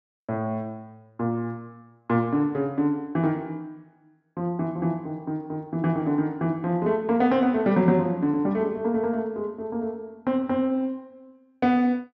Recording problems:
treble missing; nothing above 8 kHz

